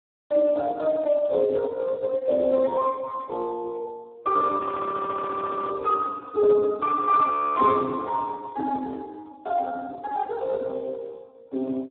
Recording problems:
telephone audio; 280 Hz to 2.3 kHz, Speex
audio freezing; at 4.5 s for 1 s and at 7.5 s

